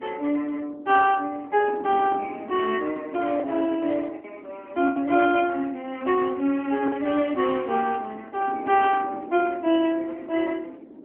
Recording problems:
telephone audio; 240 Hz to 3.2 kHz, AMR-NB
wind noise; below 380 Hz, SNR 18 dB
lost packets; 3% of the sound replaced, filled with the last packet

